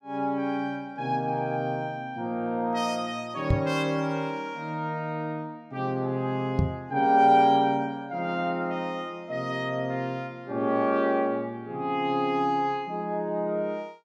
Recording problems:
microphone bump; at 3.5 s and at 6.5 s; peak +7 dB vs average level

